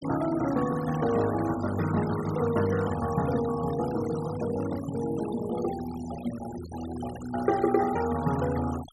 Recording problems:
noise reduction artefacts; signal-to-artefact ratio 14 dB

